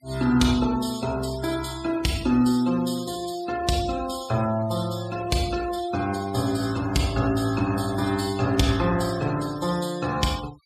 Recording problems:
denoising artefacts; signal-to-artefact ratio 16 dB

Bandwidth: 14.5 kHz